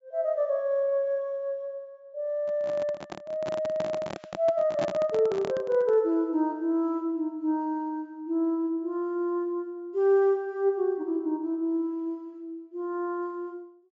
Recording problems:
low-pass filter; nothing above 7.5 kHz
handling noise; from 2.5 to 6 s; peak -1 dB vs average level

